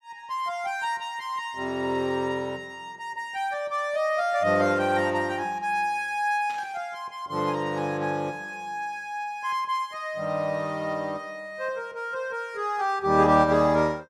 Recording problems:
burst of static; at 6.5 s; peak -13 dB vs average level

